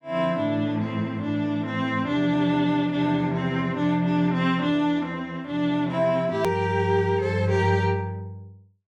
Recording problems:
hard cut with a click; at 6.5 s

